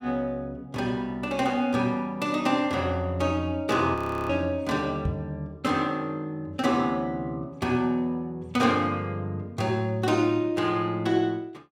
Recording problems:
audio freezing; at 4 s
microphone bump; at 5 s; peak +1 dB vs average level

